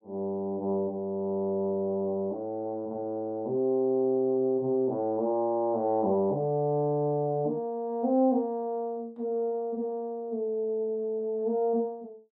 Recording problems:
none

